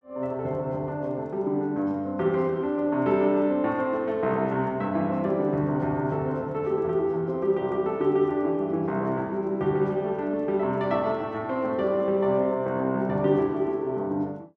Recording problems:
none

